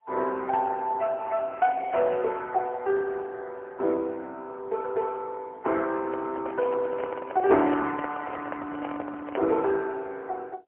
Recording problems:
phone line; 260 Hz to 3.1 kHz, AMR-NB, then MP3
microphone handling noise; from 6 to 9.5 s; peak -2 dB vs average level

